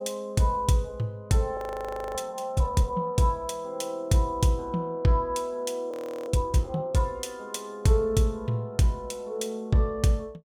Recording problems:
audio freezing; at 1.5 s for 0.5 s and at 6 s

